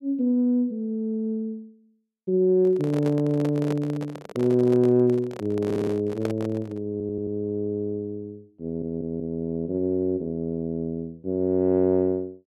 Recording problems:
handling noise; from 2.5 to 7 s; peak -2 dB vs average level
stutter; at 5.5 s, at 7 s and at 8.5 s

